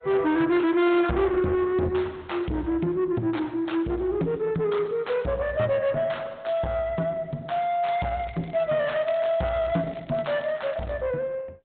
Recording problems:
treble missing; nothing above 3.9 kHz
lossy compression; Opus, log-spectral distance 3 dB
distortion; soft clipping, signal-to-distortion ratio 10 dB
crackle; from 8 to 11 s; loose cable, SNR 27 dB

